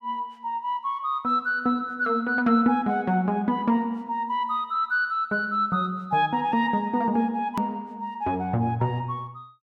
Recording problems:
edit click; at 7.5 s

